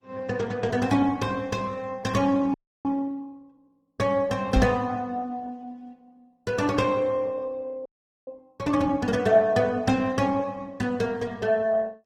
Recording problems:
lossy compression; Opus, then Opus, log-spectral distance 3 dB, nothing above 19 kHz
frozen audio; at 2.5 s and at 8 s
microphone bump; at 4.5 s; peak +5 dB vs average level

